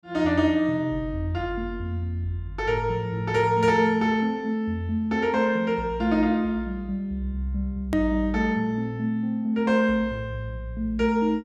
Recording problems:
click at an edit; at 8 s

